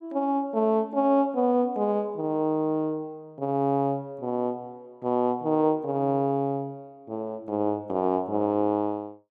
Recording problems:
none

